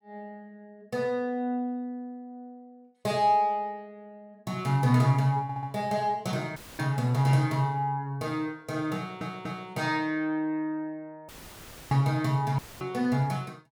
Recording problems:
audio stuttering; at 5.5 s and at 9 s
audio cutting out; at 6.5 s, at 11 s for 0.5 s and at 13 s; filled with static

